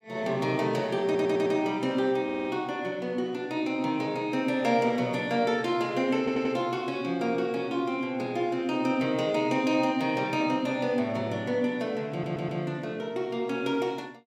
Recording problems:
audio stuttering; 4 times, first at 1 s

